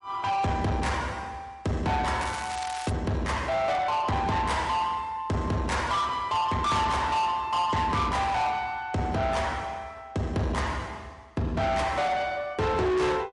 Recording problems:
codec artefacts; MP3, log-spectral distance 2 dB, nothing above 11 kHz
distorted audio; soft clipping, signal-to-distortion ratio 7 dB
crackling; at 2 s; loose cable, SNR 11 dB

